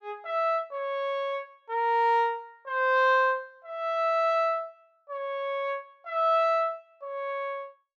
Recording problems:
none

